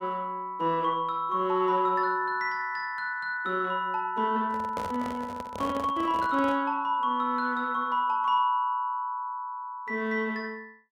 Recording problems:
microphone handling noise; from 4.5 to 6.5 s; peak -4 dB vs average level

